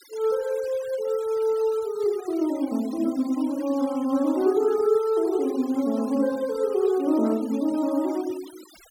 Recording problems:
denoising artefacts; signal-to-artefact ratio 21 dB

